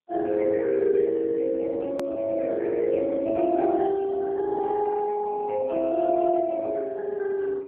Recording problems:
telephone audio; 280 Hz to 2.6 kHz, AMR-NB
hard cut with a click; at 2 s

